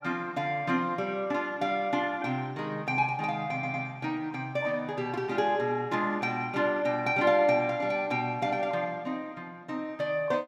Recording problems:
audio stuttering; at 3.5 s

